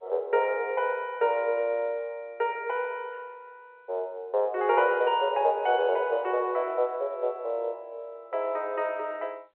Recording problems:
phone line; 340 Hz to 3.3 kHz, G.711

